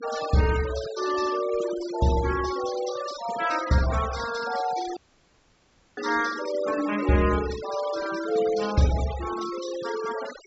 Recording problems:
treble missing; nothing above 8 kHz
noise reduction artefacts; signal-to-artefact ratio 12 dB
audio cutting out; at 5 s for 1 s

